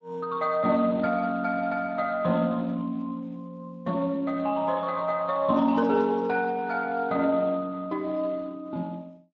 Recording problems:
lossy codec; Speex, log-spectral distance 3 dB

